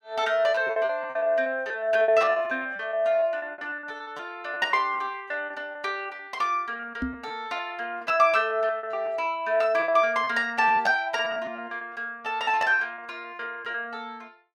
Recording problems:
packet loss; 17% of the sound replaced, filled with repeated pitch periods
knock on the microphone; at 7 s; peak -1 dB vs average level

